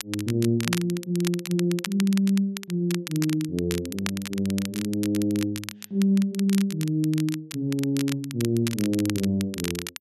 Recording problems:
crackling; vinyl, SNR 10 dB

